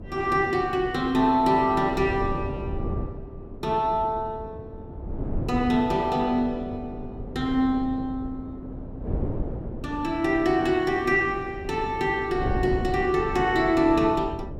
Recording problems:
wind on the microphone; below 280 Hz, SNR 11 dB

